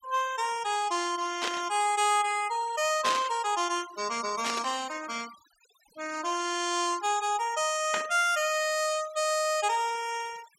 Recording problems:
denoising artefacts; signal-to-artefact ratio 18 dB
static burst; 4 times, first at 1.5 s; peak +1 dB vs average level

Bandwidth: 16.5 kHz